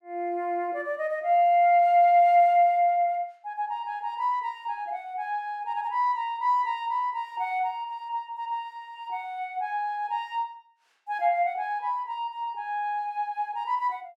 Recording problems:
none

